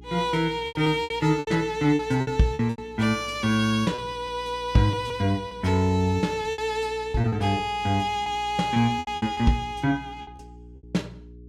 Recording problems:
hum; 60 Hz, harmonics up to 420 Hz, SNR 21 dB
lost packets; 10% of the sound replaced, filled with repeated pitch periods

